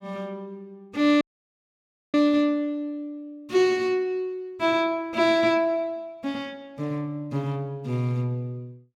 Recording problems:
dropout; at 1 s for 1 s

